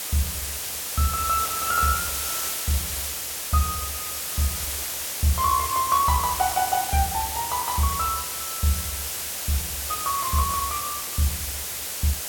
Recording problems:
background hiss; slope 0 dB per octave, SNR 2 dB

